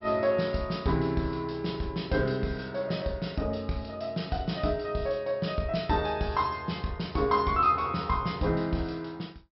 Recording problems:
low-pass filter; nothing above 5.5 kHz

